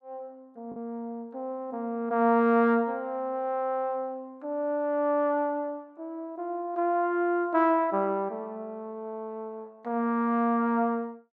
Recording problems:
lost packets; 0.4% of the sound replaced, filled with the last packet

